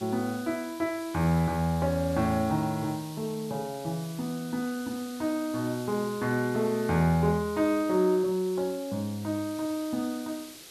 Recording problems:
background hiss; SNR 17 dB

